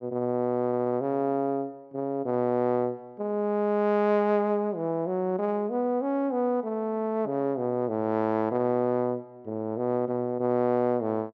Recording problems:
audio stuttering; at 0.5 s

